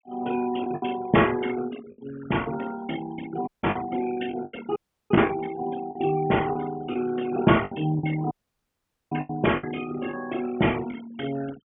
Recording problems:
treble cut off; nothing above 3.2 kHz
denoising artefacts; signal-to-artefact ratio 16 dB
packet loss; 7% of the sound replaced, filled with the last packet
audio cutting out; at 3.5 s, at 5 s and at 8.5 s for 1 s

